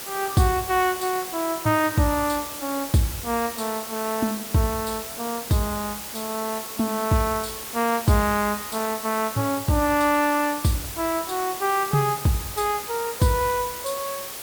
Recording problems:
background hiss; slope -1 dB per octave, SNR 8 dB

